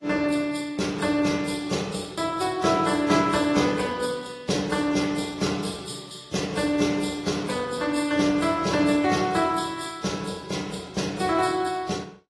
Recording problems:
lossy codec; AAC, then AAC, log-spectral distance 4 dB, nothing above 11 kHz

